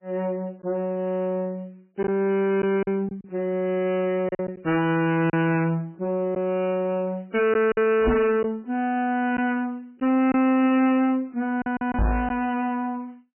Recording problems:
lossy codec; MP3, log-spectral distance 2 dB, nothing above 2.4 kHz
distortion; soft clipping, signal-to-distortion ratio 6 dB
lost packets; 4% of the sound replaced, filled with silence
knock on the microphone; at 8 s and at 12 s; peak +7 dB vs average level

